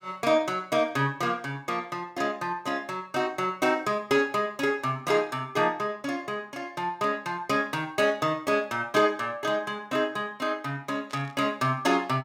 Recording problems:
burst of static; at 11 s; peak -9 dB vs average level

